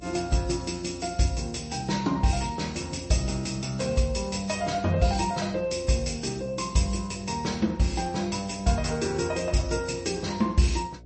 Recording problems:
codec artefacts; MP3, log-spectral distance 5 dB, nothing above 8.2 kHz
hum; 60 Hz, harmonics up to 720 Hz, SNR 21 dB

